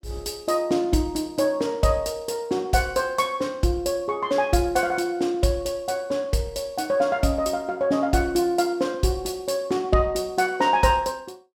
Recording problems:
none

